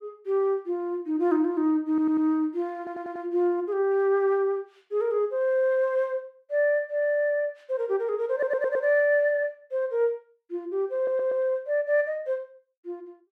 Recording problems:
audio stuttering; 4 times, first at 2 s

